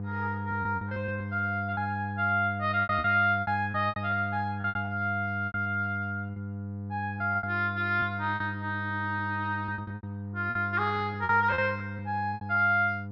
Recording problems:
hum; 50 Hz, harmonics up to 700 Hz, SNR 8 dB
lost packets; 12% of the sound replaced, filled with repeated pitch periods

